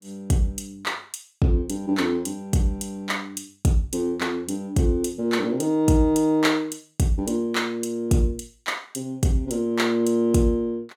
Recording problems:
none

